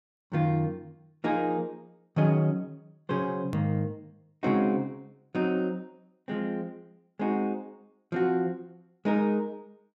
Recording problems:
low-pass filter; nothing above 8 kHz
hard cut with a click; at 3.5 s

